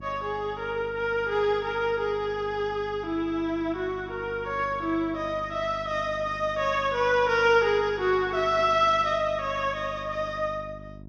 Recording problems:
hum; 50 Hz, harmonics up to 700 Hz, SNR 18 dB

